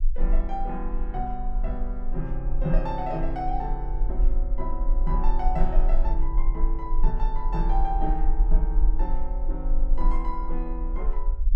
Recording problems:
rumble; below 36 Hz, strongest tone 18 Hz, SNR -4 dB

